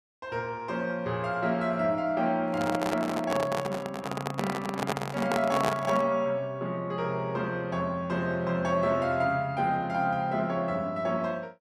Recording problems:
handling noise; from 2.5 to 6 s; peak +4 dB vs average level

